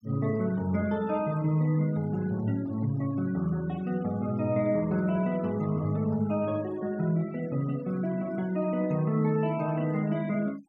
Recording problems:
denoising artefacts; signal-to-artefact ratio 23 dB

